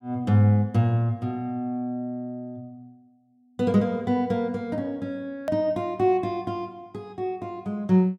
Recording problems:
hard cut with a click; at 5.5 s

